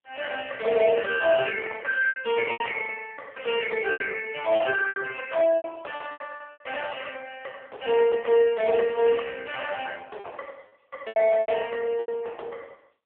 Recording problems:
telephone audio; 340 Hz to 2.8 kHz, AMR-NB
lost packets; 8% of the sound replaced, filled with repeated pitch periods

